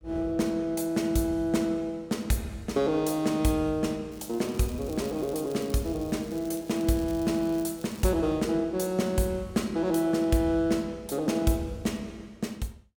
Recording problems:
crackling; from 4 to 8 s; loose cable, SNR 21 dB

